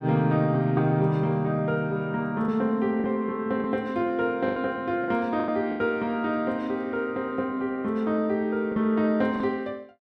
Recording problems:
lost packets; 5% of the sound replaced, filled with the last packet

